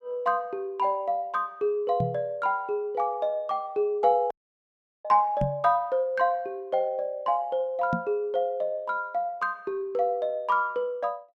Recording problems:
microphone thump; at 2 s, at 5.5 s and at 8 s; peak +2 dB vs average level
audio cutting out; at 4.5 s for 0.5 s

